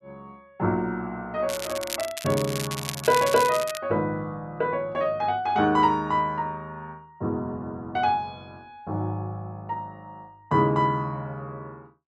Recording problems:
crackling; from 1.5 to 4 s; loose cable, SNR 7 dB

